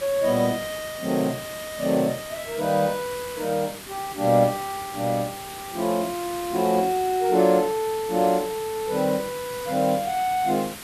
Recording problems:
background hiss; SNR 13 dB

